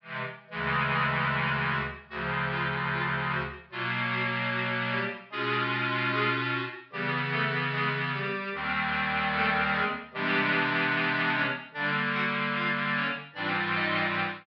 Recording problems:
treble missing; nothing above 5.5 kHz

